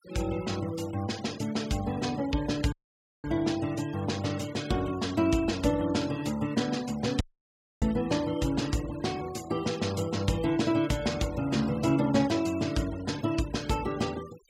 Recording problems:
denoising artefacts; signal-to-artefact ratio 17 dB
dropout; at 2.5 s for 0.5 s and at 7 s for 0.5 s

